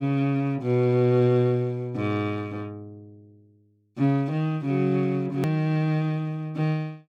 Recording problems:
edit click; at 5.5 s

